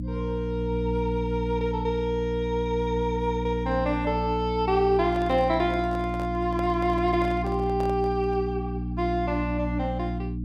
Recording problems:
hum; 60 Hz, harmonics up to 300 Hz, SNR 4 dB
microphone handling noise; from 5 to 8.5 s; peak -8 dB vs average level

